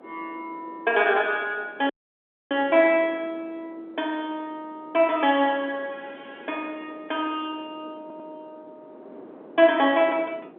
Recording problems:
phone line; 280 Hz to 3.5 kHz, G.711
wind noise; below 580 Hz, SNR 21 dB
audio cutting out; at 2 s for 0.5 s
audio stuttering; at 8 s

